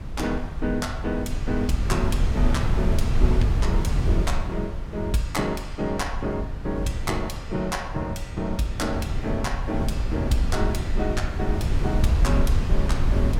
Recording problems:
wind on the microphone; below 88 Hz, SNR -1 dB

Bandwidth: 17 kHz